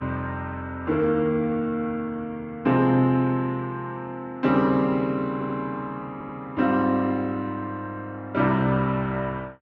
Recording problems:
lossy codec; Vorbis, log-spectral distance 2 dB
audio stuttering; at 5.5 s and at 6 s

